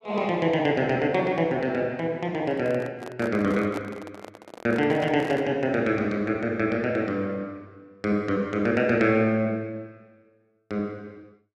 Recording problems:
handling noise; from 2.5 to 5.5 s; peak -6 dB vs average level

